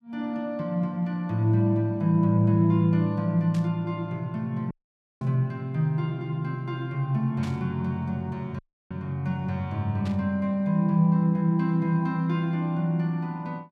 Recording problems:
static burst; 4 times, first at 3.5 s; peak -12 dB vs average level
dropout; at 4.5 s for 0.5 s and at 8.5 s

